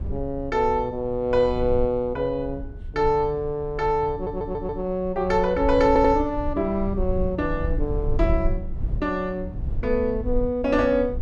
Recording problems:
rumble; below 70 Hz, SNR 9 dB
audio stuttering; at 4 s and at 6 s

